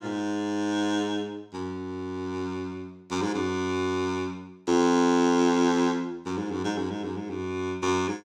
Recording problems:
none

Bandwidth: 17 kHz